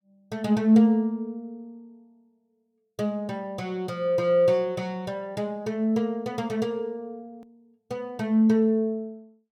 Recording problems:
hard cut with a click; at 7.5 s

